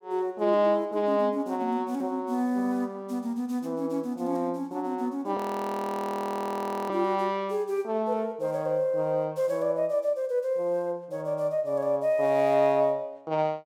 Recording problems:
audio freezing; at 5.5 s for 1.5 s

